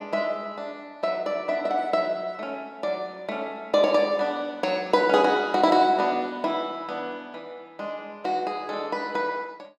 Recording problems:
none

